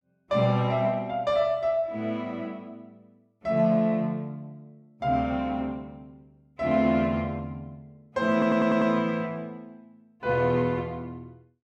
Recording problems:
audio stuttering; at 8.5 s

